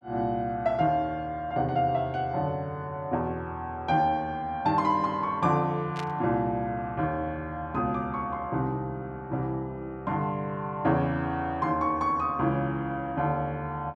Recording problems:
static burst; at 6 s; peak -6 dB vs average level

